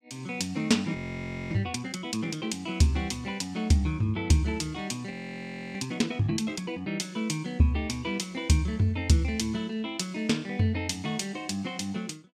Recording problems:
audio freezing; at 1 s for 0.5 s and at 5 s for 0.5 s

